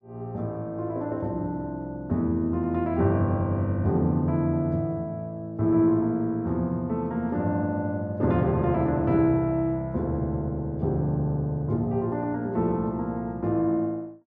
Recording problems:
none

